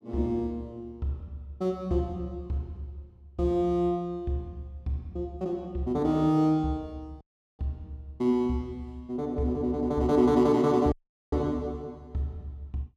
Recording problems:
dropout; at 7 s and at 11 s

